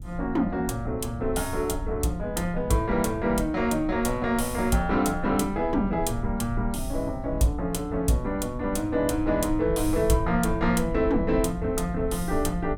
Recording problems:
rumble; below 88 Hz, SNR 10 dB

